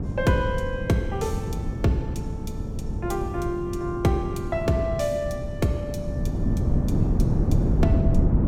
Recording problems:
wind noise; below 200 Hz, SNR 0 dB

